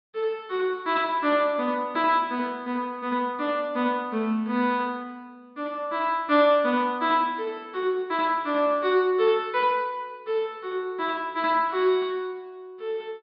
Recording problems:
low-pass filter; nothing above 5.5 kHz

